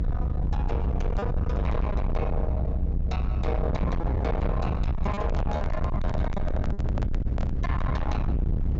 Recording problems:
treble missing; nothing above 8 kHz
distorted audio; soft clipping, signal-to-distortion ratio 6 dB
rumble; below 130 Hz, SNR -4 dB
lost packets; 3% of the sound replaced, filled with repeated pitch periods
microphone handling noise; from 5 to 7.5 s; peak +3 dB vs average level

